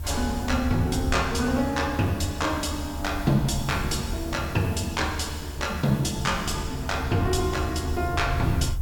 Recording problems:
background hiss; slope -1 dB per octave, SNR 21 dB
low-frequency rumble; below 80 Hz, SNR 7 dB
wind noise; below 790 Hz, SNR 22 dB

